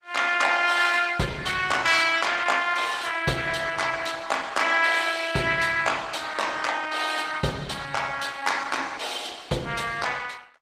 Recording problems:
lossy codec; Opus, log-spectral distance 5 dB, nothing above 15.5 kHz

